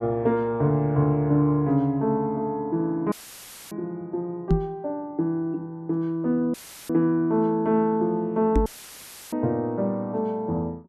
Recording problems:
audio cutting out; at 3 s for 0.5 s, at 6.5 s and at 8.5 s for 0.5 s; filled with static
microphone thump; at 4.5 s and at 8.5 s; peak +7 dB vs average level

